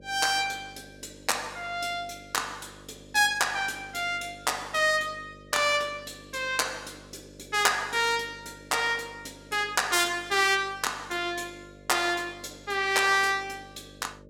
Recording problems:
hum; 50 Hz, harmonics up to 600 Hz, SNR 24 dB

